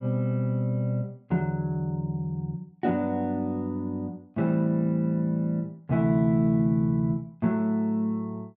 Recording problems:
none

